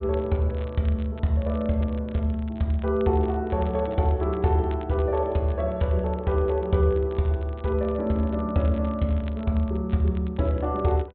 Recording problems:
treble cut off; nothing above 4 kHz
crackling; vinyl, SNR 27 dB

